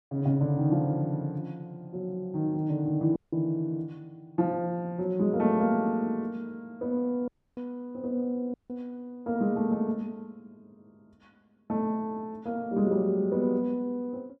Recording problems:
audio cutting out; at 3 s, at 7.5 s and at 8.5 s

